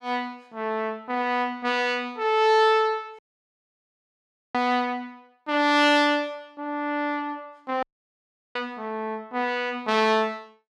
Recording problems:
audio cutting out; at 3 s for 1.5 s and at 8 s for 0.5 s

